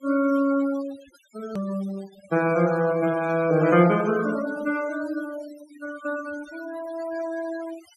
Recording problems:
denoising artefacts; signal-to-artefact ratio 17 dB
hard cut with a click; at 1.5 s

